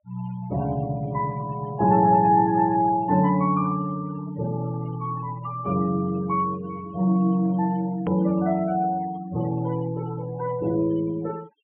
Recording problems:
low-pass filter; nothing above 3.2 kHz
denoising artefacts; signal-to-artefact ratio 19 dB
click at an edit; at 8 s

